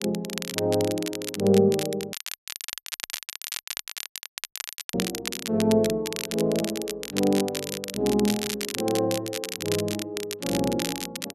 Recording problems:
crackle; vinyl, SNR 7 dB
audio cutting out; at 2 s for 3 s

